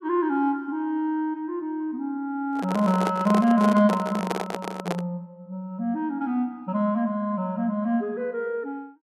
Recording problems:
microphone handling noise; from 2.5 to 5 s; peak +2 dB vs average level

